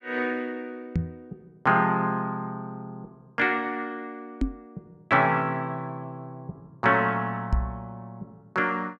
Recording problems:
knock on the microphone; at 1 s, at 4.5 s and at 7.5 s; peak +5 dB vs average level

